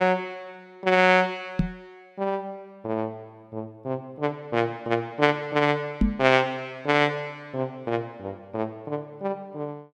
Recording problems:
microphone thump; at 1.5 s and at 6 s; peak +7 dB vs average level

